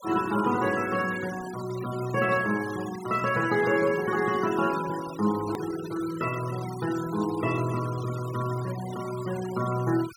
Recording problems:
noise reduction artefacts; signal-to-artefact ratio 15 dB
hard cut with a click; at 5.5 s

